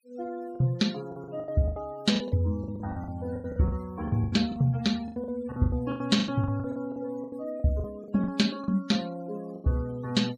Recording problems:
noise reduction artefacts; signal-to-artefact ratio 20 dB
lost packets; 17% of the sound replaced, filled with the last packet

